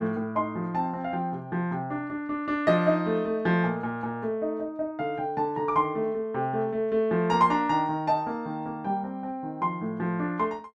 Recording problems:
none

